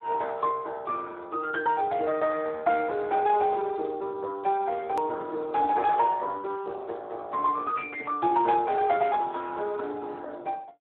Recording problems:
telephone audio; 300 Hz to 2.8 kHz, Speex
edit click; at 5 s

